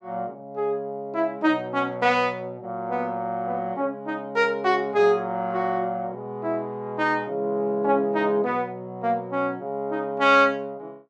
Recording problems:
none

